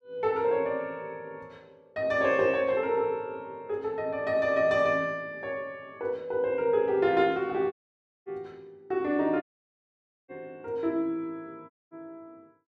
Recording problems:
audio cutting out; at 7.5 s for 0.5 s, at 9.5 s for 1 s and at 12 s

